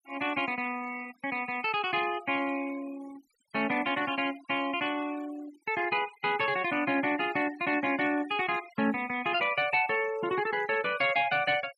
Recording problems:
denoising artefacts; signal-to-artefact ratio 17 dB

